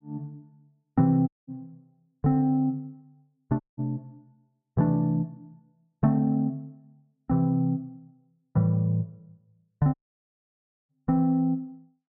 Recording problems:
audio cutting out; at 1.5 s, at 3.5 s and at 10 s for 1 s

